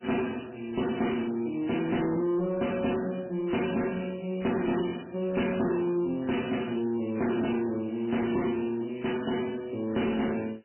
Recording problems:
lossy codec; MP3, log-spectral distance 10 dB, nothing above 2.8 kHz
distorted audio; soft clipping, signal-to-distortion ratio 11 dB

